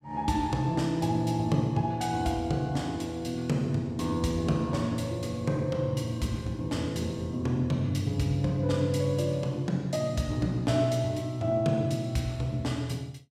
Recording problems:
none

